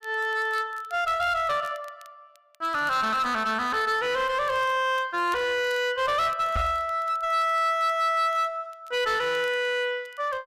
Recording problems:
distortion; hard clipping, uneven, signal-to-distortion ratio 9 dB
crackle; vinyl, SNR 30 dB
microphone bump; at 6.5 s; peak 0 dB vs average level

